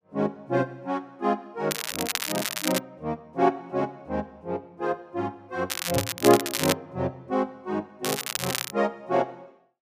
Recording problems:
crackling; from 1.5 to 3 s, from 5.5 to 6.5 s and at 8 s; loose cable, SNR 1 dB
microphone thump; at 6 s; peak +2 dB vs average level

